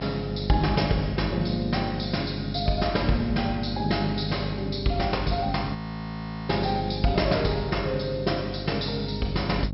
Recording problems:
treble missing; nothing above 5.4 kHz
hum; 50 Hz, harmonics up to 600 Hz, SNR 7 dB
frozen audio; at 6 s for 0.5 s

